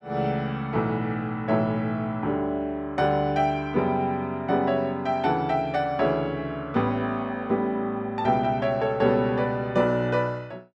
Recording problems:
none

